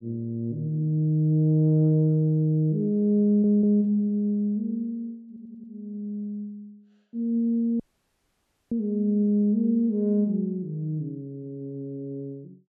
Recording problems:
audio stuttering; at 3.5 s and at 5.5 s
dropout; at 8 s for 1 s

